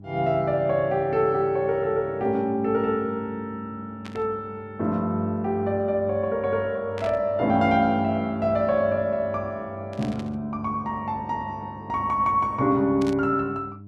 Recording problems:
electrical hum; 50 Hz, harmonics up to 400 Hz, SNR 19 dB
burst of static; 4 times, first at 4 s; peak -10 dB vs average level

